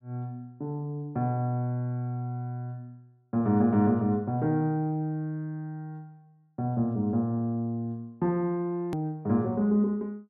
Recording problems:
click at an edit; at 9 s

